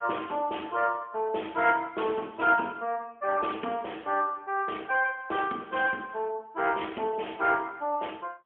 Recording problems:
phone line; 260 Hz to 3.3 kHz, AMR-NB, then MP3

